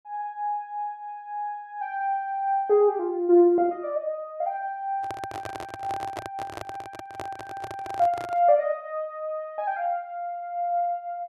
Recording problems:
microphone handling noise; from 5 to 8.5 s; peak -3 dB vs average level

